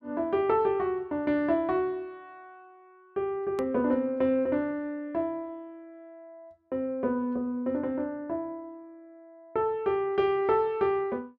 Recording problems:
click at an edit; at 3.5 s

